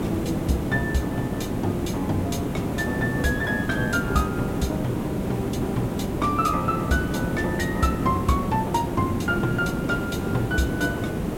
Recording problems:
hum; 60 Hz, harmonics up to 300 Hz, SNR 18 dB
background hiss; slope -9 dB per octave, SNR 1 dB

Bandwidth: 16.5 kHz